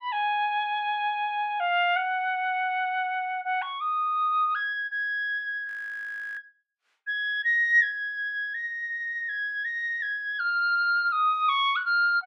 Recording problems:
audio freezing; at 5.5 s for 0.5 s

